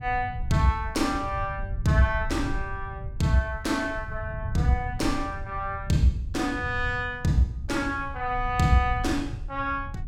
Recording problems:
rumble; below 100 Hz, SNR 9 dB

